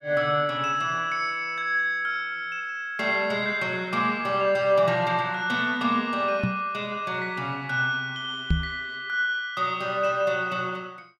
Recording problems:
microphone thump; at 6.5 s and at 8.5 s; peak +5 dB vs average level

